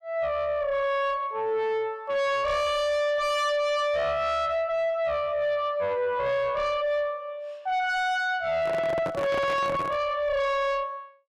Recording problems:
distorted audio; soft clipping, signal-to-distortion ratio 5 dB
microphone handling noise; from 8.5 to 10 s; peak 0 dB vs average level

